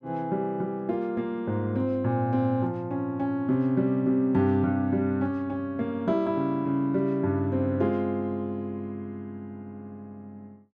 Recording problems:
none

